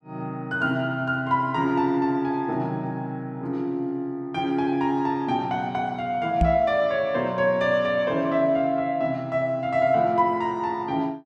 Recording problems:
knock on the microphone; at 6.5 s; peak +5 dB vs average level

